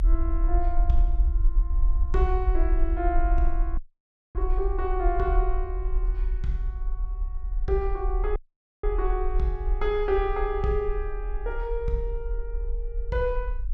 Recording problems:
rumble; below 46 Hz, SNR -1 dB
dropout; at 4 s for 0.5 s and at 8.5 s

